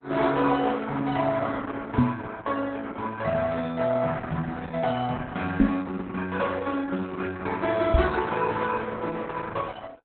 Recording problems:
lossy codec; Opus, log-spectral distance 4 dB, nothing above 4 kHz
microphone thump; at 2 s, at 5.5 s and at 8 s; peak +11 dB vs average level

